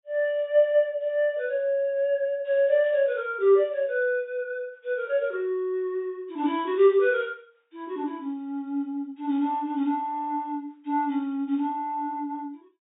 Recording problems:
low-pass filter; nothing above 3.8 kHz

